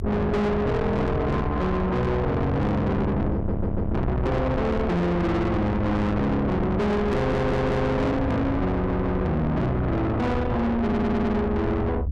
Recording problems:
distorted audio; soft clipping, signal-to-distortion ratio 6 dB
rumble; below 420 Hz, SNR 4 dB
stutter; 4 times, first at 3.5 s

